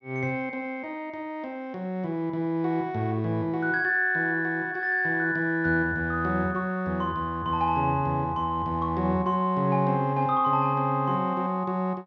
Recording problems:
low-pass filter; nothing above 6.7 kHz

